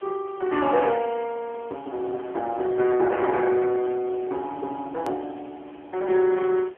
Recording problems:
phone line; 300 Hz to 3.4 kHz, AMR-NB
hiss; SNR 27 dB
hard cut with a click; at 5 s

